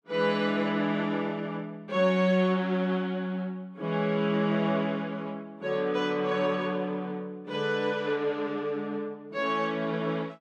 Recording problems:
none

